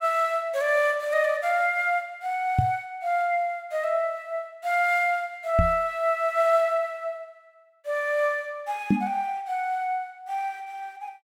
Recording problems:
knock on the microphone; at 2.5 s, at 5.5 s and at 9 s; peak +7 dB vs average level

